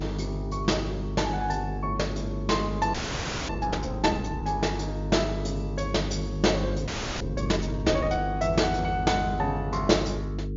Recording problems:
treble missing; nothing above 7.2 kHz
hum; 50 Hz, harmonics up to 450 Hz, SNR 4 dB
audio freezing; at 3 s for 0.5 s and at 7 s

